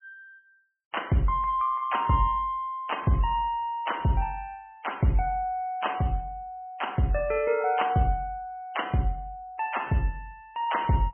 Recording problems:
treble missing; nothing above 3.1 kHz
lossy codec; MP3, log-spectral distance 2 dB

